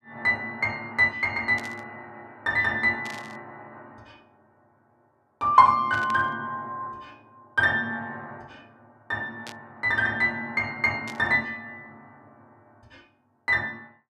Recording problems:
burst of static; 5 times, first at 1.5 s; peak -10 dB vs average level

